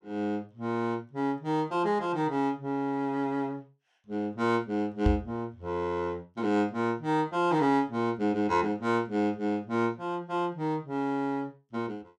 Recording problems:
microphone thump; at 5 s; peak +6 dB vs average level

